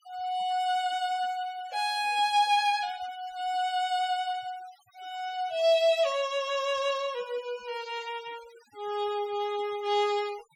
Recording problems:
denoising artefacts; signal-to-artefact ratio 21 dB

